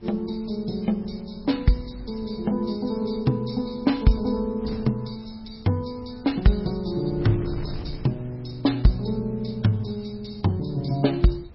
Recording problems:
lossy codec; MP3, log-spectral distance 4 dB, nothing above 5.3 kHz
wind on the microphone; below 170 Hz, SNR 17 dB

